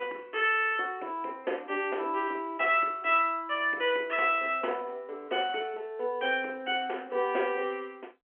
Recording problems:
phone line; 280 Hz to 3.1 kHz, G.711

